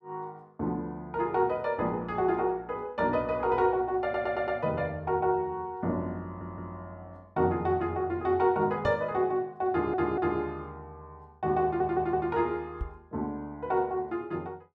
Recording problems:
audio stuttering; 4 times, first at 4 s
microphone bump; at 9 s and at 13 s; peak -1 dB vs average level

